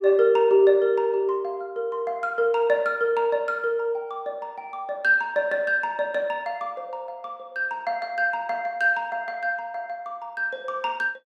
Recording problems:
none

